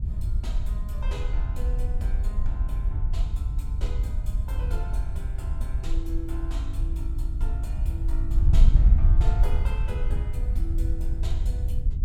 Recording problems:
wind on the microphone; below 66 Hz, SNR -13 dB

